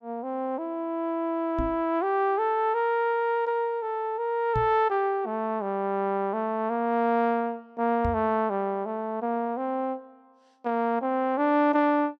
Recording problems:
knock on the microphone; at 1.5 s, at 4.5 s and at 8 s; peak -1 dB vs average level

